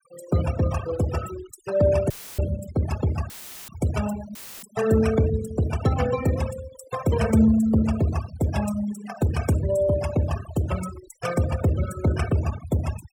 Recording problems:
denoising artefacts; signal-to-artefact ratio 12 dB
audio cutting out; at 2 s, at 3.5 s and at 4.5 s; filled with static

